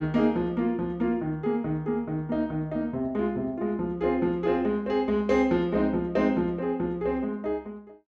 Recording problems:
none

